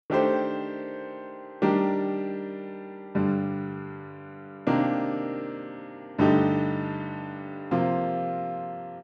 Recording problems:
none

